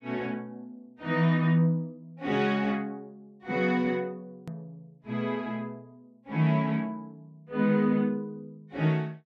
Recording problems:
edit click; at 4.5 s

